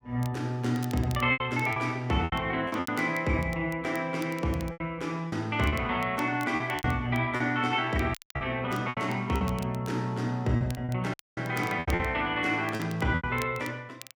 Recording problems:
crackling; vinyl, SNR 21 dB
lost packets; 9% of the sound replaced, filled with repeated pitch periods
dropout; at 8 s and at 11 s

